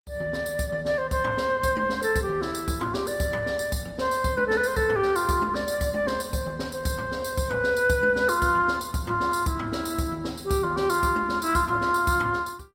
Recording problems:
lossy compression; Opus, log-spectral distance 4 dB, nothing above 16.5 kHz

